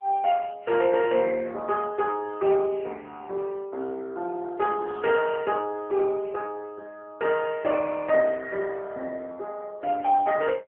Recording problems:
phone line; 260 Hz to 3.2 kHz, AMR-NB

